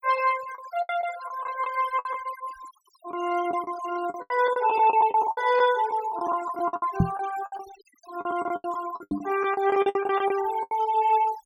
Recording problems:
denoising artefacts; signal-to-artefact ratio 16 dB
lost packets; 15% of the sound replaced, filled with the last packet
microphone thump; at 7 s and at 9 s; peak +7 dB vs average level

